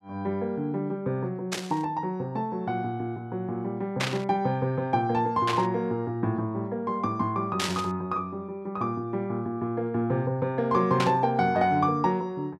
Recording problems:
static burst; 5 times, first at 1.5 s; peak +3 dB vs average level

